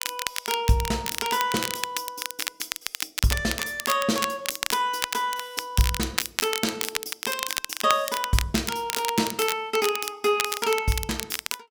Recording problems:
crackle; vinyl, SNR 3 dB

